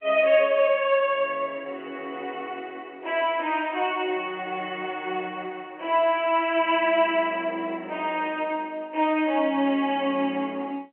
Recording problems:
phone line; 240 Hz to 3.3 kHz, G.711

